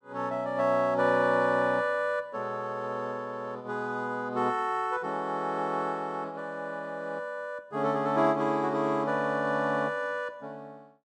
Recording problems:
none

